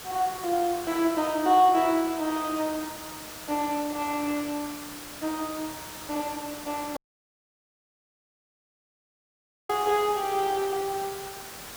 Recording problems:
hiss; slope -2 dB per octave, SNR 12 dB
dropout; at 7 s for 2.5 s

